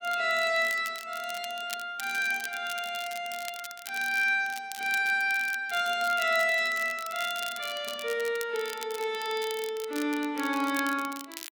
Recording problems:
crackling; vinyl, SNR 14 dB

